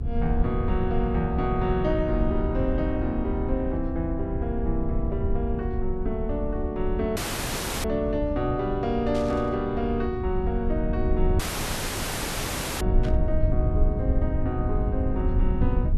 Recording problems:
low-frequency rumble; below 84 Hz, SNR 1 dB
audio cutting out; at 7 s for 0.5 s and at 11 s for 1.5 s
static burst; at 9 s and at 13 s; peak -8 dB vs average level

